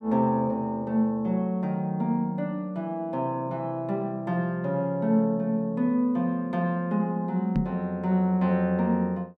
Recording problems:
microphone thump; at 7.5 s; peak +5 dB vs average level

